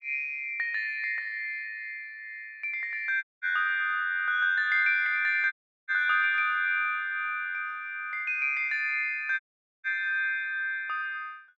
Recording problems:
dropout; at 3 s, at 5.5 s and at 9.5 s

